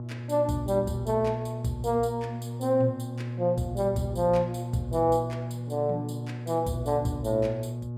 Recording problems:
hum; 60 Hz, harmonics up to 840 Hz, SNR 7 dB

